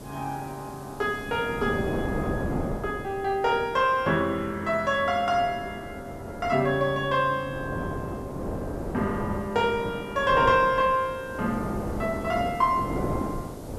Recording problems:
hiss; slope 0 dB per octave, SNR 27 dB
wind on the microphone; below 550 Hz, SNR 8 dB

